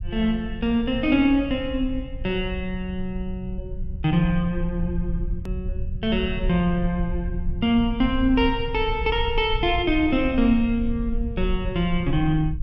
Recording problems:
low-frequency rumble; below 66 Hz, SNR 8 dB
hard cut with a click; at 5.5 s

